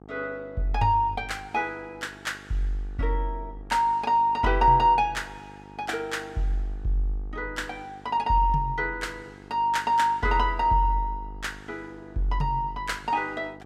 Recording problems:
hum; 50 Hz, harmonics up to 1.3 kHz, SNR 22 dB

